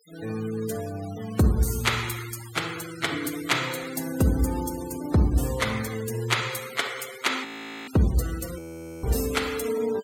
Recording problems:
denoising artefacts; signal-to-artefact ratio 14 dB
frozen audio; at 7.5 s and at 8.5 s

